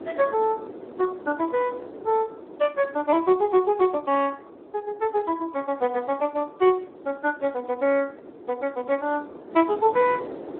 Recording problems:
telephone audio; 300 Hz to 2.9 kHz, Speex
wind noise; below 550 Hz, SNR 17 dB

